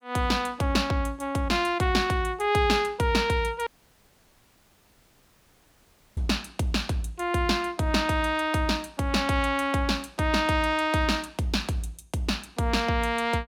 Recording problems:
audio cutting out; at 3.5 s for 2.5 s

